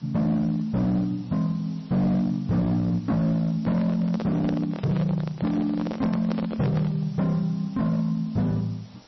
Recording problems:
lossy compression; MP3, log-spectral distance 6 dB, nothing above 5.8 kHz
distorted audio; hard clipping, signal-to-distortion ratio 11 dB
background hiss; SNR 27 dB
handling noise; from 3.5 to 7 s; peak -3 dB vs average level

